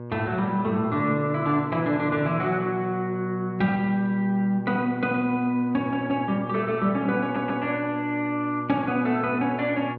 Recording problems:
hum; 60 Hz, harmonics up to 1.2 kHz, SNR 11 dB
stutter; at 7 s

